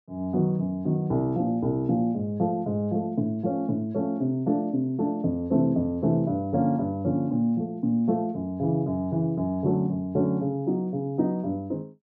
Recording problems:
none

